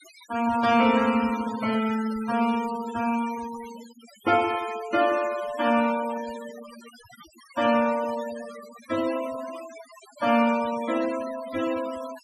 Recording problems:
noise reduction artefacts; signal-to-artefact ratio 14 dB

